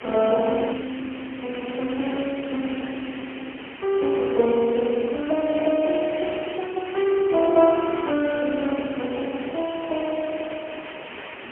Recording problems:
telephone audio; 240 Hz to 3.7 kHz, AMR-NB, then MP3
background hiss; SNR 13 dB

